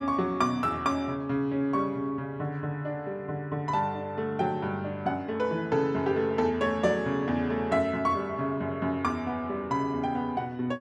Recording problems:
none

